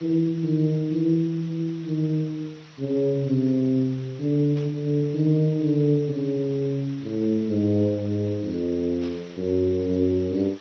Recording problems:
lossy compression; MP2, then Speex, log-spectral distance 5 dB
background hiss; SNR 24 dB
burst of static; at 4.5 s and at 9 s; peak -15 dB vs average level

